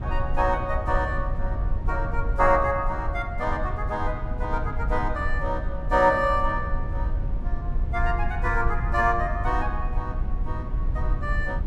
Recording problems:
rumble; below 70 Hz, SNR 4 dB

